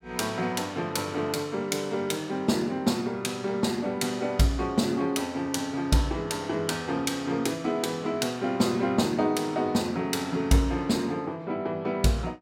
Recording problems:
none

